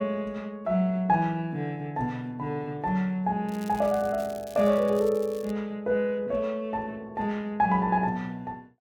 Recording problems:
crackling; from 3.5 to 5.5 s; loose cable, SNR 22 dB

